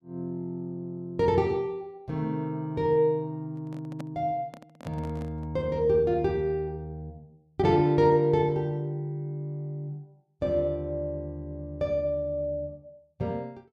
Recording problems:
microphone handling noise; from 3.5 to 5.5 s; peak -8 dB vs average level

